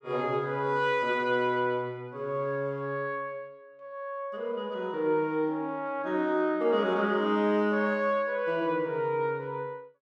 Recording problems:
none

